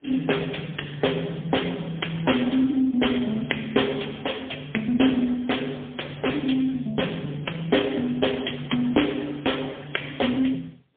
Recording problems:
telephone audio; 220 Hz to 3.4 kHz, AMR-NB, then MP3

